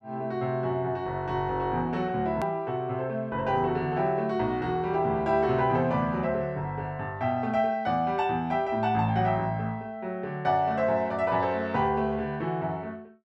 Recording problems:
edit click; at 2.5 s

